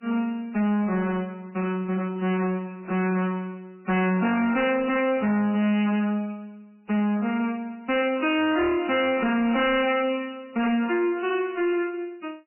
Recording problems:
lossy compression; MP3, log-spectral distance 3 dB, nothing above 2.6 kHz
distortion; hard clipping, signal-to-distortion ratio 6 dB

